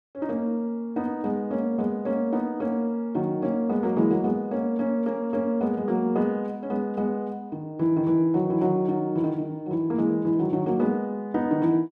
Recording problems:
none

